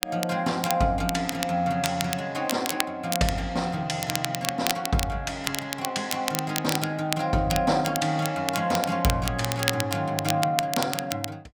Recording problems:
crackle; vinyl, SNR 5 dB

